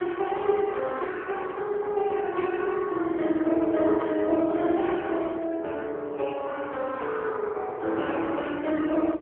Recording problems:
telephone audio; 280 Hz to 3.2 kHz, AMR-NB

